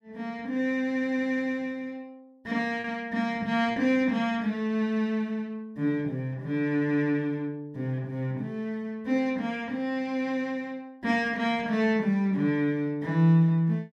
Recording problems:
lost packets; 0.6% of the sound replaced, filled with repeated pitch periods

